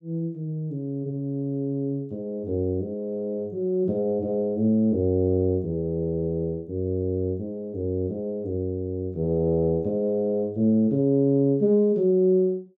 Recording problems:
none

